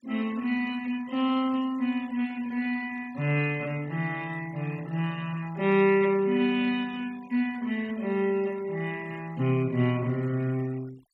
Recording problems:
denoising artefacts; signal-to-artefact ratio 22 dB

